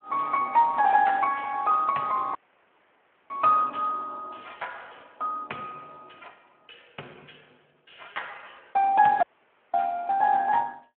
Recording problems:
phone line; 320 Hz to 3.1 kHz, Speex
dropout; at 2.5 s for 1 s and at 9 s for 0.5 s

